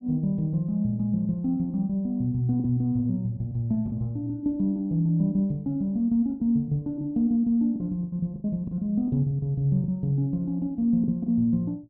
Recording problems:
lost packets; 5% of the sound replaced, filled with the last packet

